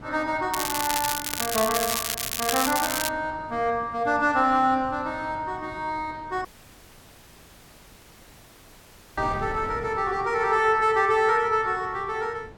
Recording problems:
wind on the microphone; below 540 Hz, SNR 19 dB
crackling; from 0.5 to 3 s; loose cable, SNR 2 dB
audio cutting out; at 6.5 s for 2.5 s

